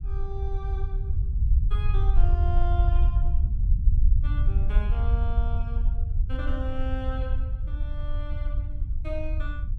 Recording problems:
low-frequency rumble; below 66 Hz, SNR -12 dB

